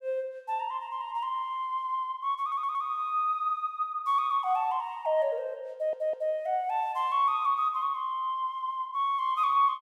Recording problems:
stutter; at 2.5 s and at 5.5 s

